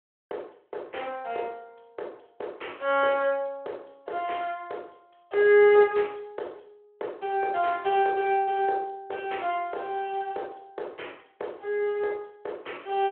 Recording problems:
phone line; 340 Hz to 3.3 kHz, Speex

